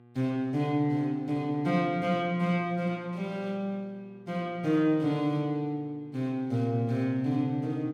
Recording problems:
electrical hum; 60 Hz, harmonics up to 1.6 kHz, SNR 25 dB

